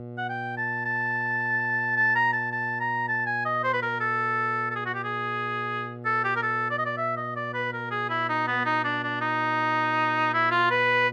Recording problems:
electrical hum; 60 Hz, harmonics up to 840 Hz, SNR 13 dB

